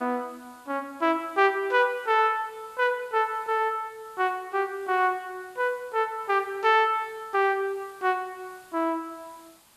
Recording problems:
background hiss; SNR 29 dB

